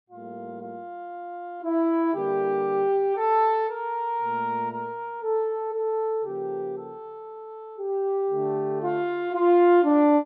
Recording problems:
none

